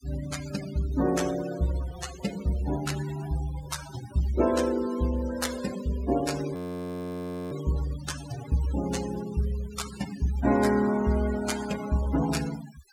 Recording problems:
noise reduction artefacts; signal-to-artefact ratio 12 dB
frozen audio; at 6.5 s for 1 s

